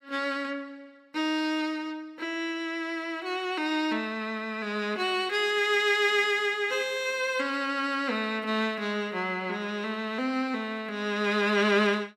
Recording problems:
none

